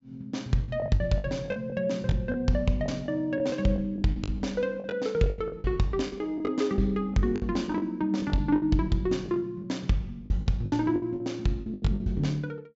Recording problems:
treble cut off; nothing above 7.6 kHz
lost packets; 14% of the sound replaced, filled with the last packet

